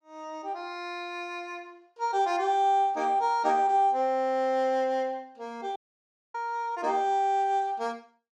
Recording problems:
audio cutting out; at 6 s for 0.5 s

